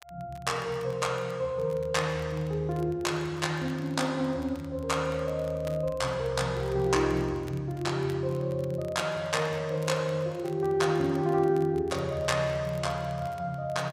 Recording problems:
crackle; vinyl, SNR 26 dB

